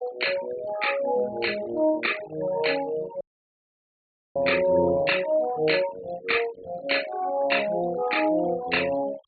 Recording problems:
treble missing; nothing above 4.4 kHz
denoising artefacts; signal-to-artefact ratio 14 dB
dropout; at 3 s for 1 s

